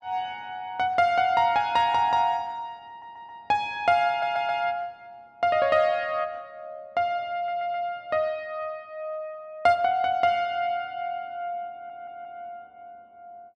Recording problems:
stutter; 4 times, first at 3 s

